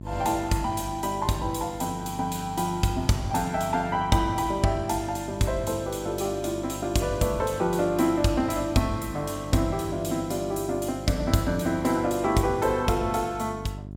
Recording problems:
hum; 50 Hz, harmonics up to 700 Hz, SNR 13 dB

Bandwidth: 17 kHz